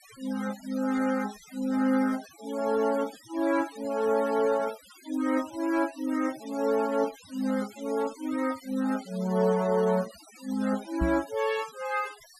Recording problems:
noise reduction artefacts; signal-to-artefact ratio 18 dB
knock on the microphone; at 11 s; peak +3 dB vs average level

